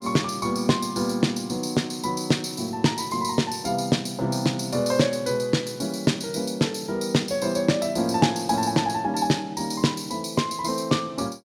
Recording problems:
none

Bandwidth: 17 kHz